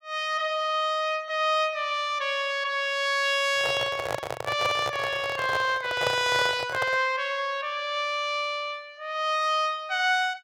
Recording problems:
handling noise; from 3.5 to 7 s; peak +1 dB vs average level

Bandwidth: 17 kHz